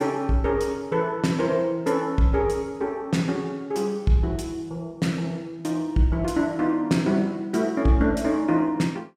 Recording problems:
none

